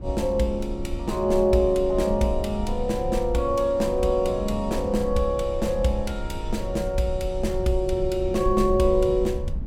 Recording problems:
rumble; below 72 Hz, SNR 9 dB

